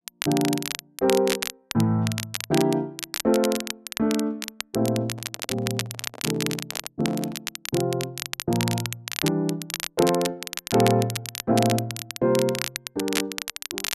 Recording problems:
crackling; vinyl, SNR 6 dB
handling noise; from 5 to 7.5 s; peak -10 dB vs average level

